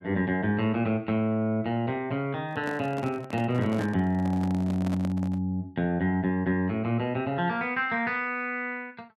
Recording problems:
microphone handling noise; from 2.5 to 5.5 s; peak -5 dB vs average level

